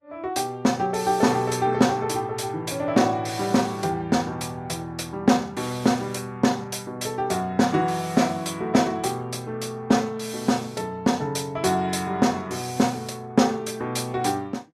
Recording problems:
codec artefacts; Vorbis, log-spectral distance 3 dB, nothing above 12.7 kHz

